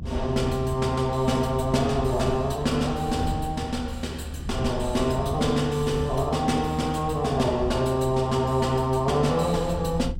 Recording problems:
rumble; below 110 Hz, SNR 10 dB

